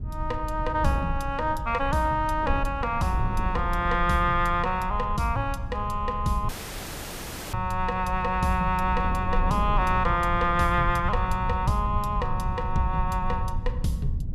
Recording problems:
rumble; below 90 Hz, SNR 7 dB
wind noise; below 88 Hz, SNR 11 dB
audio cutting out; at 6.5 s for 1 s

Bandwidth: 14.5 kHz